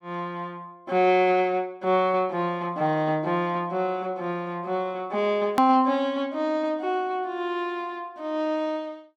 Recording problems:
hard cut with a click; at 5.5 s

